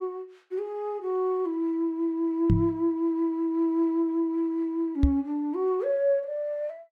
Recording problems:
microphone thump; at 2.5 s and at 5 s; peak +8 dB vs average level

